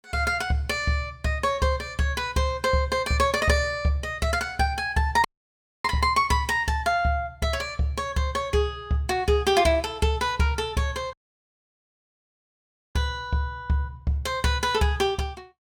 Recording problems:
audio cutting out; at 5.5 s for 0.5 s and at 11 s for 2 s

